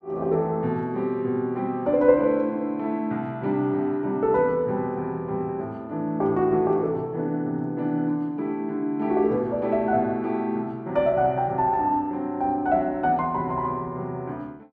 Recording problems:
none

